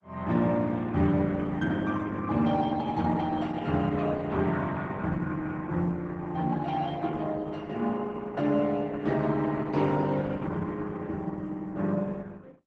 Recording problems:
lossy compression; Opus, then Opus, log-spectral distance 3 dB

